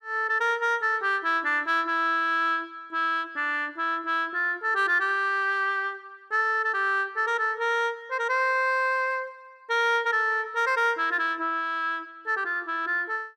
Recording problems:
none

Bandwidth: 14.5 kHz